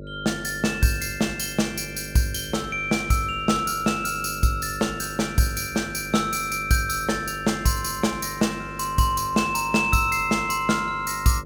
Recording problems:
electrical hum; 50 Hz, harmonics up to 600 Hz, SNR 15 dB

